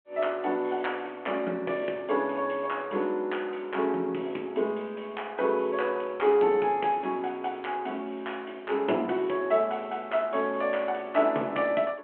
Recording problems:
phone line; 220 Hz to 3.3 kHz, G.726

